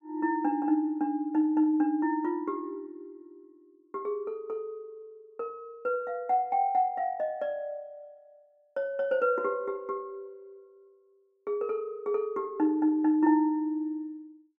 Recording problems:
none

